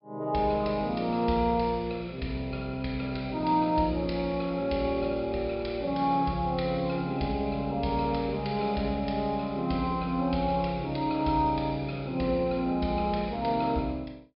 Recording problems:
treble missing; nothing above 5.5 kHz

